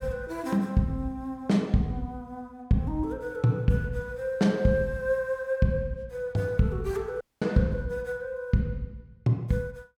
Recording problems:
dropout; at 7 s

